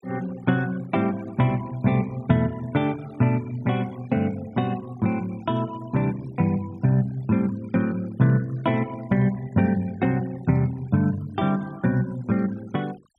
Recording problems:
noise reduction artefacts; signal-to-artefact ratio 24 dB

